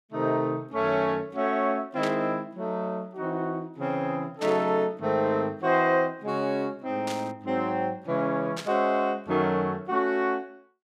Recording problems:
burst of static; 4 times, first at 2 s; peak -4 dB vs average level

